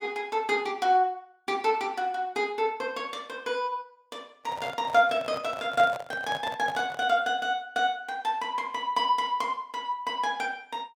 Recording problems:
handling noise; from 4.5 to 7 s; peak -4 dB vs average level

